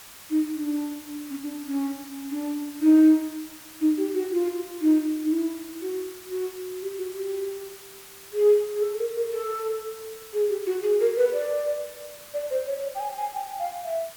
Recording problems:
hiss; slope 0 dB per octave, SNR 17 dB

